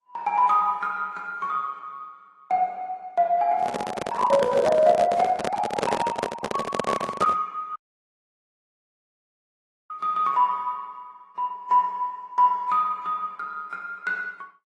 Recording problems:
lossy codec; Opus, then AAC, log-spectral distance 2 dB
handling noise; from 3.5 to 7.5 s; peak +3 dB vs average level
audio cutting out; at 8 s for 2 s

